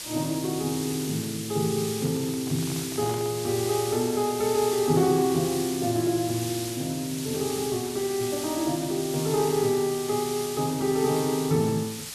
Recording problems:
hiss; slope +2 dB per octave, SNR 8 dB
microphone handling noise; from 2 to 3.5 s; peak -9 dB vs average level

